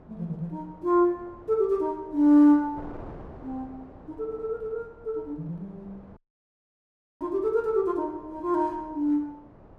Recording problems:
wind noise; below 630 Hz, SNR 23 dB
dropout; at 6 s for 1 s

